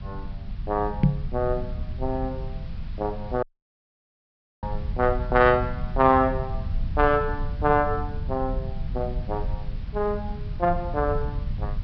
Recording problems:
treble missing; nothing above 5.5 kHz
hiss; SNR 26 dB
low-frequency rumble; below 98 Hz, SNR 7 dB
microphone bump; at 1 s; peak +9 dB vs average level
dropout; at 3.5 s for 1 s

